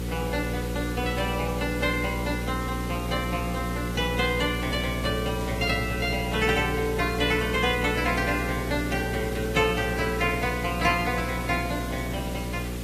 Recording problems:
codec artefacts; AAC, log-spectral distance 7 dB, nothing above 13.8 kHz
electrical hum; 60 Hz, harmonics up to 540 Hz, SNR 5 dB
background hiss; slope -2 dB per octave, SNR 12 dB
burst of static; at 5.5 s; peak -12 dB vs average level

